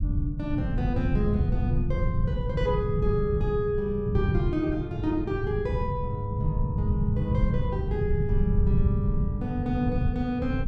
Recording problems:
low-frequency rumble; below 150 Hz, SNR -2 dB

